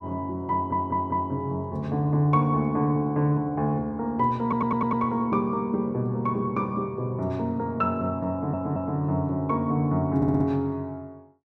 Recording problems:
stutter; 4 times, first at 0.5 s

